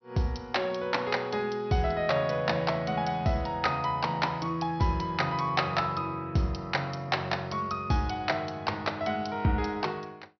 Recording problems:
treble cut off; nothing above 5.7 kHz

